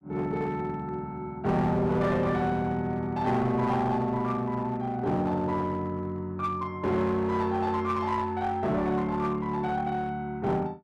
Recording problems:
distorted audio; hard clipping, uneven, signal-to-distortion ratio 11 dB

